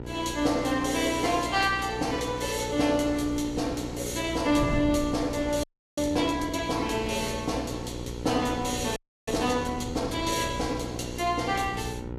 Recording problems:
codec artefacts; Vorbis, log-spectral distance 4 dB, nothing above 12.7 kHz
hum; 60 Hz, harmonics up to 1.4 kHz, SNR 10 dB
wind on the microphone; below 210 Hz, SNR 15 dB
audio freezing; at 5.5 s and at 9 s

